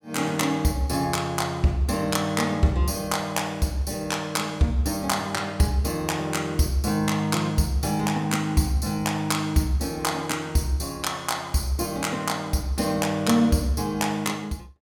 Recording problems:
none

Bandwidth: 18 kHz